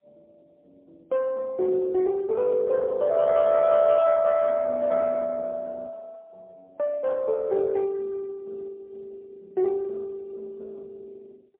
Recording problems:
phone line; 280 Hz to 2 kHz, AMR-NB, then MP3

